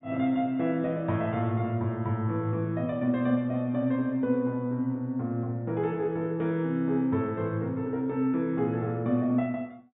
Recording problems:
low-pass filter; nothing above 4 kHz

